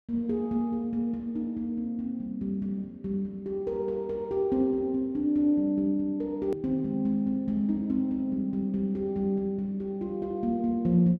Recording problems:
click at an edit; at 6.5 s

